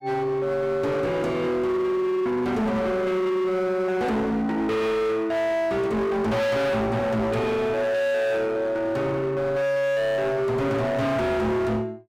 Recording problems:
distortion; hard clipping, signal-to-distortion ratio 7 dB

